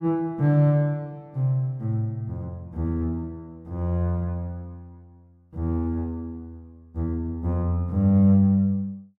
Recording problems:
none

